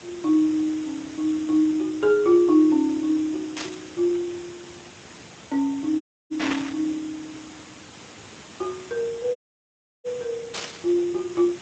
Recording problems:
lossy codec; Speex, log-spectral distance 13 dB
background hiss; slope -3 dB per octave, SNR 19 dB
burst of static; at 3.5 s, at 6.5 s and at 11 s; peak 0 dB vs average level
dropout; at 6 s and at 9.5 s for 0.5 s

